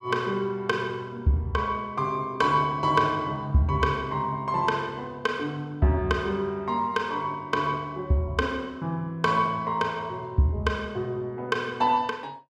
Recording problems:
none

